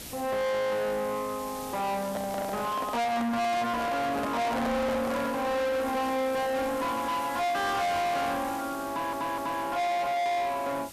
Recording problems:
distorted audio; soft clipping, signal-to-distortion ratio 6 dB
hiss; slope -2 dB per octave, SNR 15 dB
microphone handling noise; from 2 to 5.5 s; peak +3 dB vs average level
stutter; at 9 s

